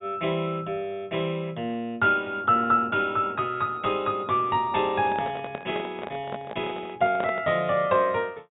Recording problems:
low-pass filter; nothing above 4 kHz
handling noise; from 5 to 7.5 s; peak -4 dB vs average level

